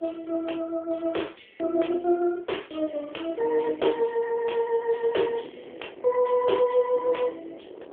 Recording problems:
phone line; 320 Hz to 3.9 kHz, AMR-NB
wind noise; below 580 Hz, SNR 21 dB

